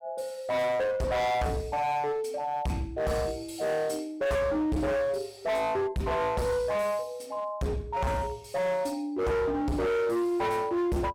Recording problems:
distortion; hard clipping, uneven, signal-to-distortion ratio 6 dB

